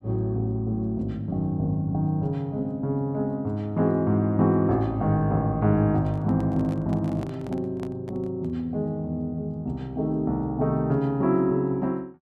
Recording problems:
handling noise; from 6 to 8.5 s; peak -11 dB vs average level

